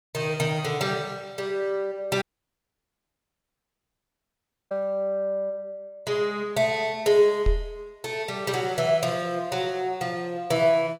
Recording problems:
audio cutting out; at 2 s for 2.5 s
microphone thump; at 7.5 s; peak +4 dB vs average level

